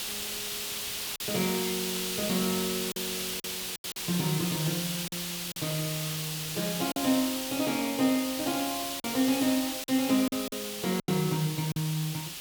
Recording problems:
hiss; slope +2 dB per octave, SNR 2 dB
lost packets; 5% of the sound replaced, filled with silence

